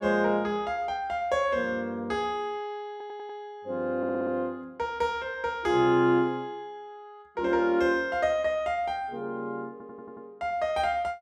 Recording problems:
audio stuttering; at 3 s, at 4 s and at 9.5 s

